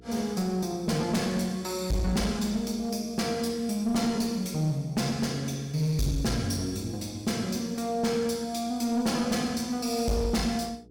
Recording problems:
distortion; hard clipping, uneven, signal-to-distortion ratio 11 dB
hum; 60 Hz, harmonics up to 480 Hz, SNR 25 dB

